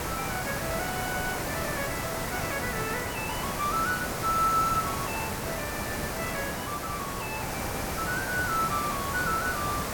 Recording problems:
background hiss; SNR 0 dB

